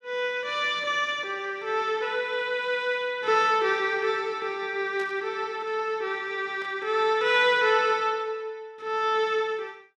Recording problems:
burst of static; at 5 s and at 6.5 s; peak -14 dB vs average level

